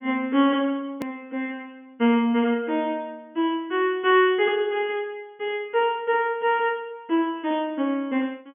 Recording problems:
treble missing; nothing above 3.4 kHz
click at an edit; at 1 s

